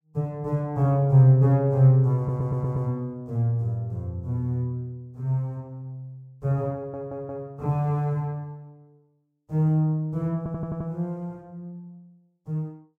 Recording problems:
audio stuttering; at 2 s, at 7 s and at 10 s

